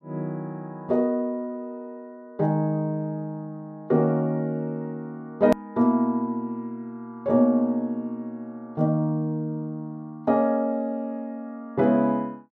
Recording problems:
edit click; at 5.5 s

